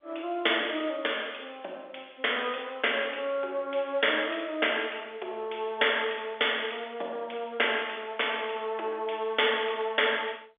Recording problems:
phone line; 320 Hz to 3.6 kHz, G.711

